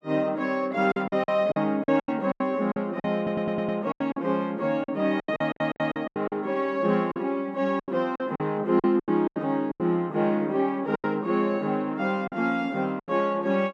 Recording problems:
lost packets; 12% of the sound replaced, filled with silence
audio stuttering; at 3 s and at 5.5 s

